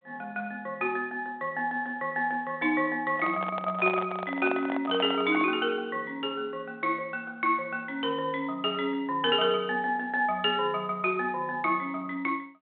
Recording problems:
phone line; 220 Hz to 3.7 kHz, G.726
handling noise; from 3 to 5.5 s; peak -1 dB vs average level

